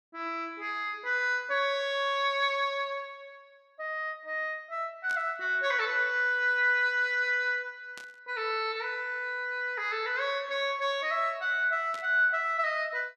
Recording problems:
static burst; at 5 s, at 8 s and at 12 s; peak -12 dB vs average level

